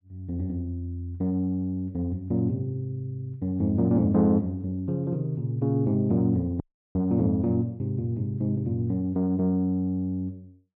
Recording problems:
audio cutting out; at 6.5 s

